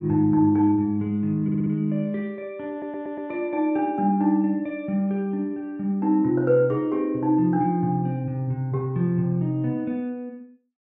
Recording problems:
audio stuttering; at 1.5 s and at 2.5 s

